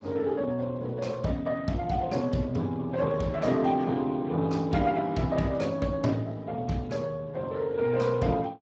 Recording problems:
codec artefacts; Speex, log-spectral distance 3 dB

